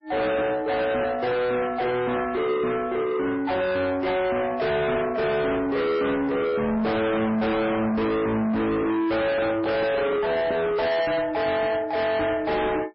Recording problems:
lossy codec; MP3, log-spectral distance 3 dB, nothing above 5.2 kHz
distorted audio; soft clipping, signal-to-distortion ratio 6 dB
handling noise; from 9 to 11 s; peak -1 dB vs average level

